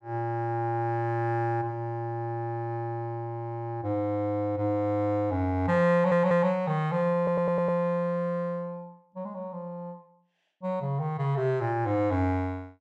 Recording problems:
stutter; at 6 s and at 7 s

